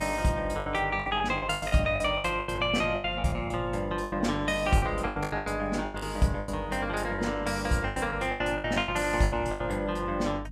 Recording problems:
hum; 50 Hz, harmonics up to 300 Hz, SNR 13 dB
lost packets; 17% of the sound replaced, filled with the last packet

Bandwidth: 14.5 kHz